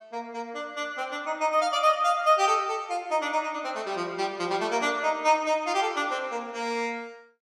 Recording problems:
none

